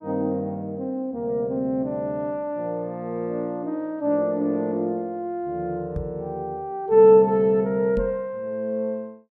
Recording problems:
knock on the microphone; at 6 s and at 8 s; peak -2 dB vs average level

